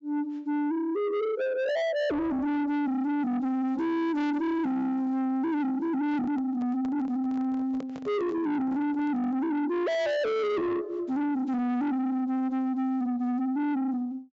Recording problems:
treble cut off; nothing above 8 kHz
distorted audio; soft clipping, signal-to-distortion ratio 8 dB
handling noise; from 6 to 9.5 s; peak -9 dB vs average level

